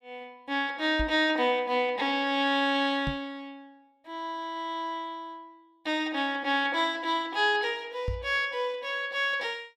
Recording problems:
microphone thump; at 1 s, at 3 s and at 8 s; peak -2 dB vs average level

